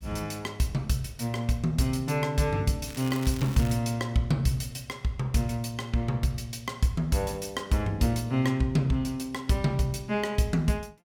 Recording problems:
crackle; at 3 s; loose cable, SNR 15 dB

